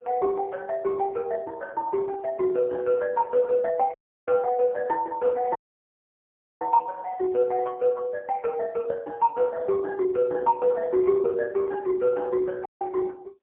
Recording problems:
phone line; 320 Hz to 2 kHz, AMR-NB, then MP3
dropout; at 4 s, at 5.5 s for 1 s and at 13 s

